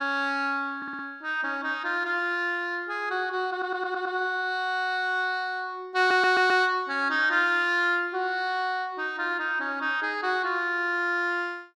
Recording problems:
stutter; at 1 s, at 3.5 s and at 6 s

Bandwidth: 13.5 kHz